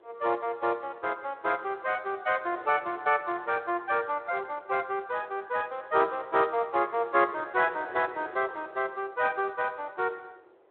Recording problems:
telephone audio; 300 Hz to 3.5 kHz, Speex
wind on the microphone; below 730 Hz, SNR 23 dB

